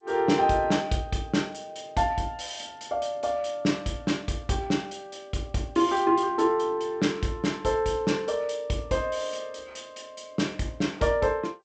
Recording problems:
lossy codec; G.722, log-spectral distance 3 dB, nothing above 8 kHz

